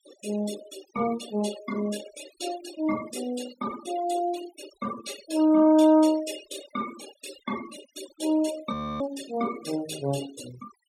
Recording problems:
noise reduction artefacts; signal-to-artefact ratio 13 dB
audio freezing; at 8.5 s

